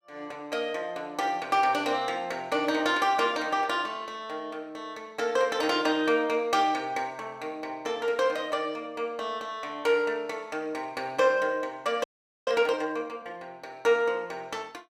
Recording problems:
audio freezing; at 12 s

